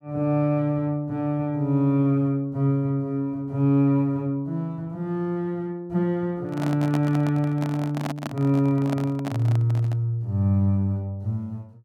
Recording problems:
handling noise; from 6.5 to 10 s; peak -3 dB vs average level

